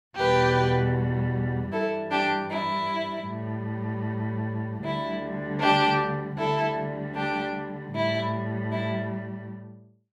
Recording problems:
none

